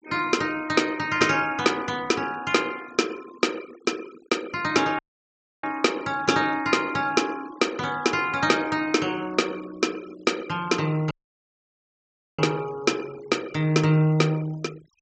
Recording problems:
treble missing; nothing above 8 kHz
denoising artefacts; signal-to-artefact ratio 21 dB
dropout; at 5 s for 0.5 s and at 11 s for 1.5 s

